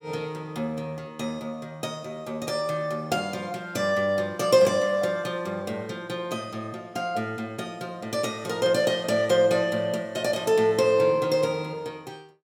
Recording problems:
none

